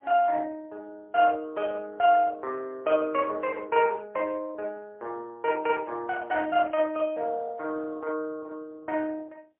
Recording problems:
phone line; 320 Hz to 3.5 kHz, AMR-NB, then MP3

